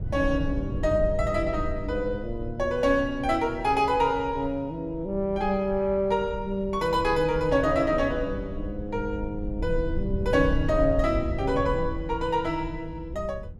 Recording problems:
low-frequency rumble; below 94 Hz, SNR 9 dB

